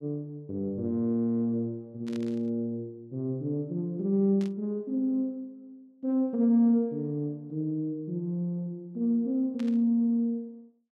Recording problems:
burst of static; at 2 s, at 4.5 s and at 9.5 s; peak -14 dB vs average level

